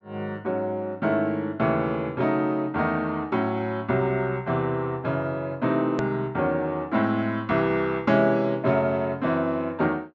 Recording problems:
low-pass filter; nothing above 8 kHz
click at an edit; at 6 s

